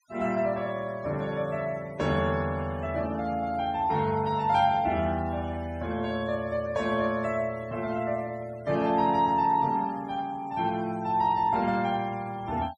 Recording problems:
noise reduction artefacts; signal-to-artefact ratio 22 dB

